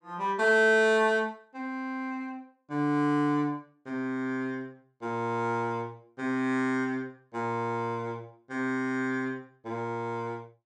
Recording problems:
none

